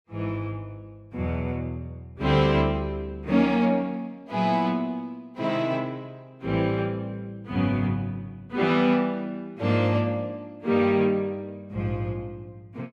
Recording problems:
none

